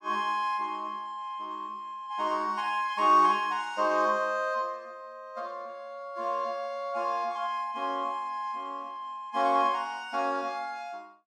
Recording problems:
none

